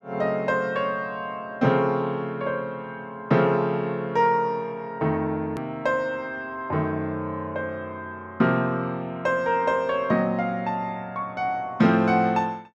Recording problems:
click at an edit; at 5.5 s

